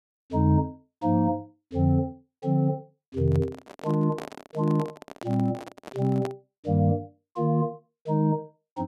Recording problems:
handling noise; from 3 to 6.5 s; peak -5 dB vs average level

